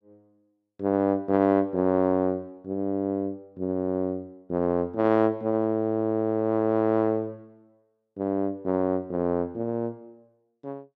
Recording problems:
none

